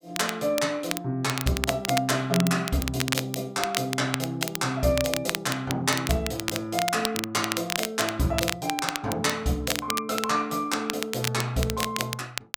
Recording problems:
crackling; vinyl, SNR 4 dB

